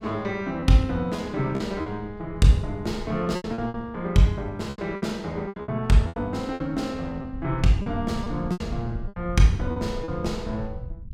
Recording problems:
low-frequency rumble; below 110 Hz, SNR 14 dB
lost packets; 10% of the sound replaced, filled with repeated pitch periods

